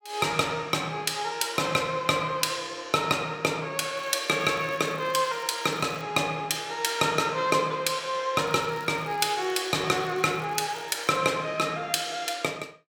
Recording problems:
crackling; from 4 to 6 s and from 8.5 to 11 s; loose cable, SNR 26 dB

